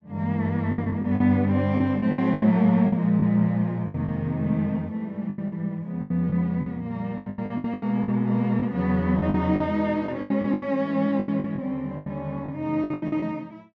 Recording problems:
lost packets; 14% of the sound replaced, filled with the last packet

